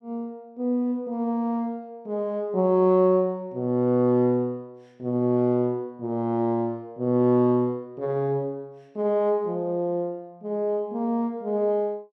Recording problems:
none

